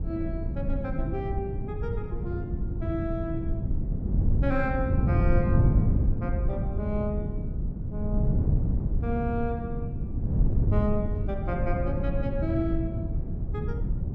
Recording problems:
low-frequency rumble; below 140 Hz, SNR 3 dB
wind on the microphone; below 140 Hz, SNR -4 dB

